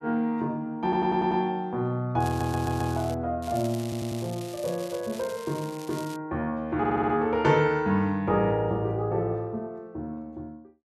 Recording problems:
stutter; 4 times, first at 1 s
crackle; at 2 s and from 3.5 to 6 s; loose cable, SNR 17 dB

